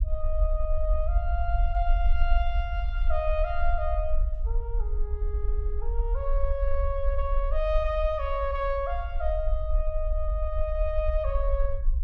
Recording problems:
low-frequency rumble; below 52 Hz, SNR -2 dB

